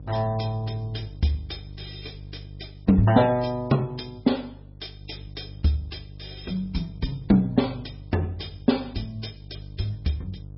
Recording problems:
codec artefacts; MP3, log-spectral distance 5 dB, nothing above 5.3 kHz
hum; 50 Hz, harmonics up to 500 Hz, SNR 17 dB

